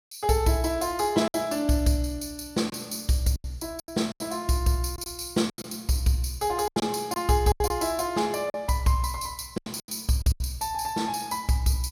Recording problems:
packet loss; 8% of the sound replaced, filled with silence

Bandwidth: 16.5 kHz